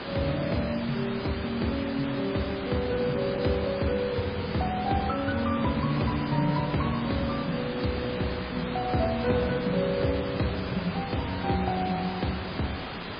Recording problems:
lossy codec; MP3, log-spectral distance 14 dB
hiss; SNR 7 dB

